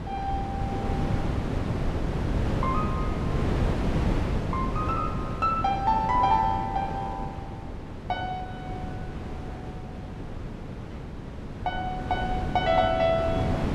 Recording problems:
wind on the microphone; below 360 Hz, SNR 3 dB

